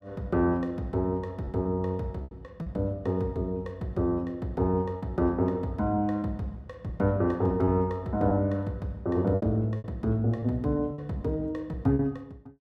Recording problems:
lost packets; 5% of the sound replaced, filled with repeated pitch periods

